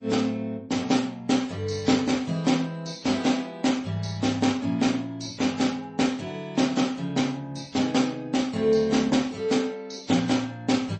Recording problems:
lossy codec; AAC, then MP3, log-spectral distance 3 dB, nothing above 8 kHz

